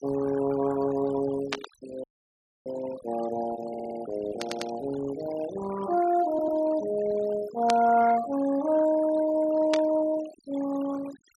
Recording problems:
noise reduction artefacts; signal-to-artefact ratio 14 dB
static burst; 4 times, first at 1.5 s; peak +1 dB vs average level
audio freezing; at 2 s for 0.5 s
audio stuttering; at 3.5 s, at 4.5 s and at 6.5 s

